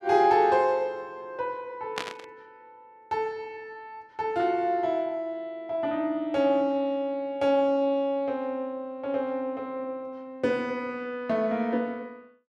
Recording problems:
burst of static; at 2 s; peak 0 dB vs average level

